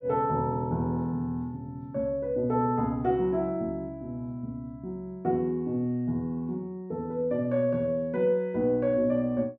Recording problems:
none

